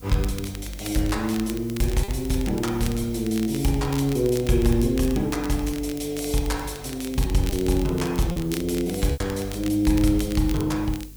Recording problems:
hum; 50 Hz, harmonics up to 450 Hz, SNR 19 dB
hiss; slope +1 dB per octave, SNR 23 dB
crackle; vinyl, SNR 15 dB
lost packets; 2% of the sound replaced, filled with repeated pitch periods

